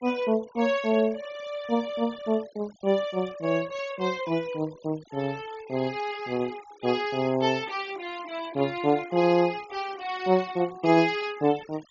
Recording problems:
low-pass filter; nothing above 7.1 kHz
noise reduction artefacts; signal-to-artefact ratio 22 dB

